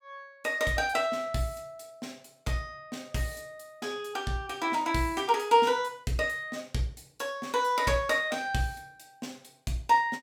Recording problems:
none

